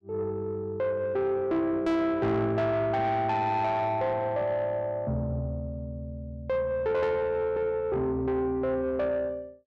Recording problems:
distortion; soft clipping, signal-to-distortion ratio 11 dB

